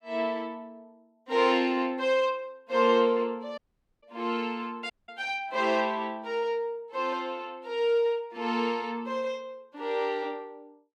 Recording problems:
audio cutting out; at 3.5 s and at 5 s

